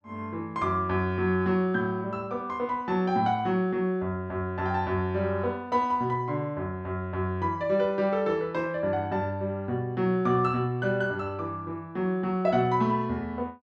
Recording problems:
none

